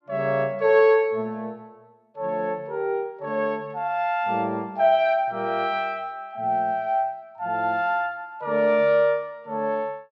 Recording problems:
none

